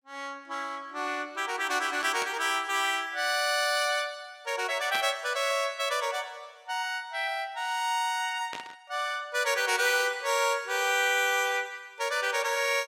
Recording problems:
burst of static; at 2 s, at 5 s and at 8.5 s; peak -3 dB vs average level

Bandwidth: 17 kHz